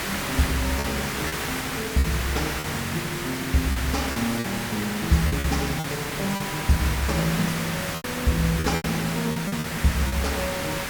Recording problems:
background hiss; SNR 2 dB
packet loss; 7% of the sound replaced, filled with repeated pitch periods

